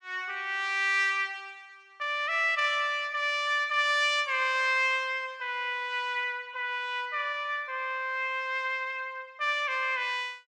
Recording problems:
none

